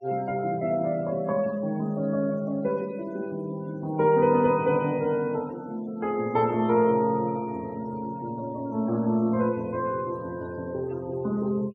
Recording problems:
denoising artefacts; signal-to-artefact ratio 25 dB

